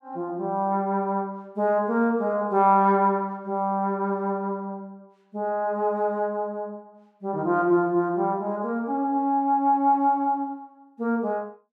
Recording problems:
none

